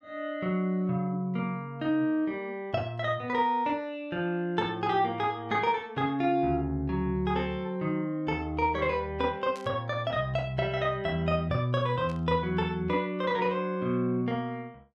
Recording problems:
burst of static; at 9.5 s and at 12 s; peak -13 dB vs average level

